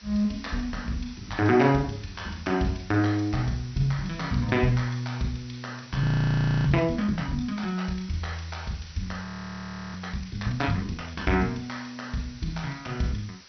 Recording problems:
treble cut off; nothing above 5.9 kHz
hiss; slope +2 dB per octave, SNR 20 dB
audio freezing; at 6 s for 0.5 s and at 9.5 s for 0.5 s

